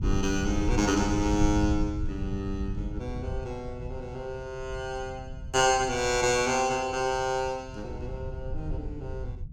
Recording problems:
low-frequency rumble; below 100 Hz, SNR 8 dB

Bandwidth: 17 kHz